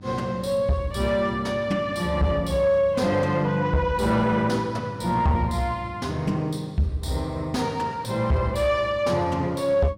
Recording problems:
distortion; soft clipping, signal-to-distortion ratio 11 dB
electrical hum; 50 Hz, harmonics up to 900 Hz, SNR 20 dB

